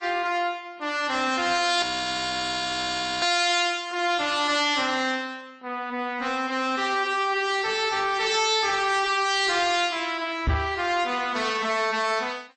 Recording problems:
lossy compression; MP3, then AAC, log-spectral distance 4 dB, nothing above 8.2 kHz
distorted audio; soft clipping, signal-to-distortion ratio 10 dB
audio freezing; at 2 s for 1.5 s
microphone thump; at 10 s; peak +3 dB vs average level

